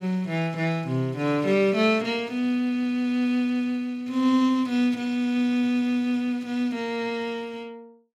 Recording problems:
none

